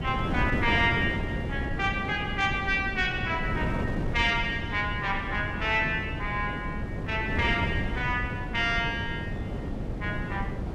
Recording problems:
wind noise; below 320 Hz, SNR 4 dB

